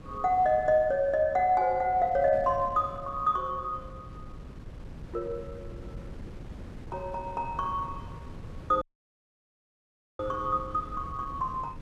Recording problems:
wind noise; below 220 Hz, SNR 16 dB
audio cutting out; at 9 s for 1.5 s

